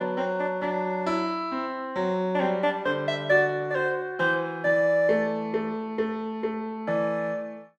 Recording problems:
none

